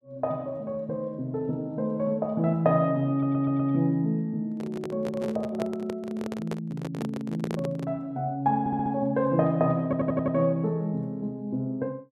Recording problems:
audio stuttering; at 3 s, at 8.5 s and at 10 s
handling noise; from 4.5 to 8 s; peak -2 dB vs average level

